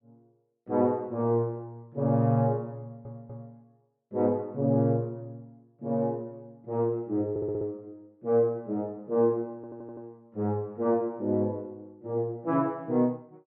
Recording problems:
stutter; at 3 s, at 7.5 s and at 9.5 s

